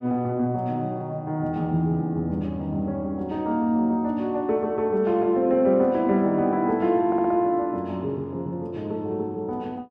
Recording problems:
stutter; at 7 s

